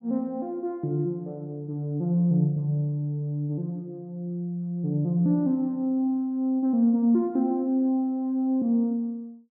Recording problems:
none

